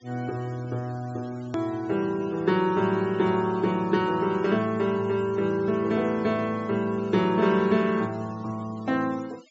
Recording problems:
treble missing; nothing above 8 kHz
denoising artefacts; signal-to-artefact ratio 24 dB
edit click; at 1.5 s

